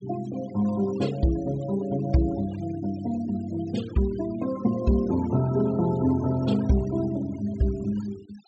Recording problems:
treble cut off; nothing above 8 kHz
noise reduction artefacts; signal-to-artefact ratio 19 dB

